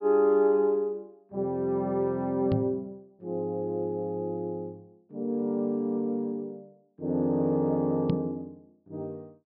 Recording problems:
treble cut off; nothing above 5.5 kHz
microphone thump; at 2.5 s and at 8 s; peak +3 dB vs average level

